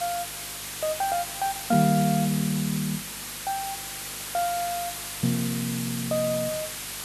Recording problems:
hum; 50 Hz, harmonics up to 500 Hz, SNR 23 dB
background hiss; slope +1 dB per octave, SNR 5 dB

